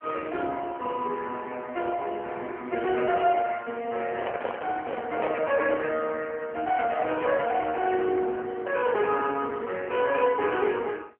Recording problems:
phone line; 260 Hz to 3.2 kHz, AMR-NB
handling noise; from 4 to 6 s; peak +1 dB vs average level

